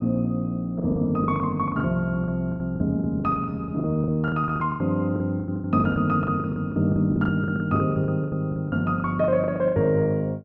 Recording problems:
packet loss; 20% of the sound replaced, filled with the last packet

